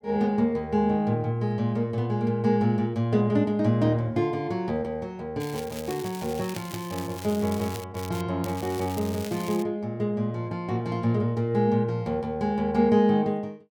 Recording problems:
crackle; from 5.5 to 8 s, at 8 s and from 8.5 to 9.5 s; loose cable, SNR 15 dB

